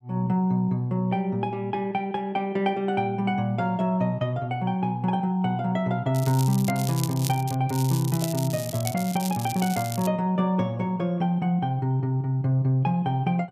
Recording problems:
crackling; from 6 to 7.5 s and from 7.5 to 10 s; loose cable, SNR 11 dB

